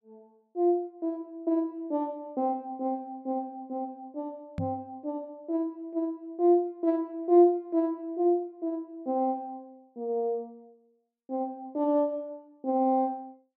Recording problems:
microphone bump; at 4.5 s; peak -1 dB vs average level

